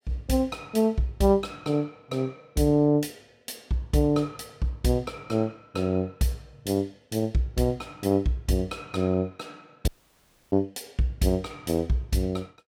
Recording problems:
audio cutting out; at 10 s for 0.5 s

